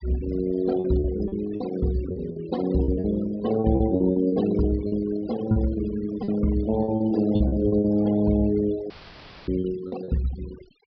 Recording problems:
treble cut off; nothing above 5.5 kHz
noise reduction artefacts; signal-to-artefact ratio 16 dB
packet loss; 10% of the sound replaced, filled with repeated pitch periods
audio cutting out; at 9 s for 0.5 s; filled with static

